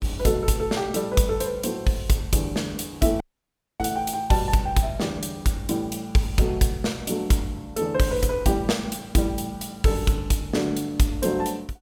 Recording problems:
dropout; at 3 s for 0.5 s

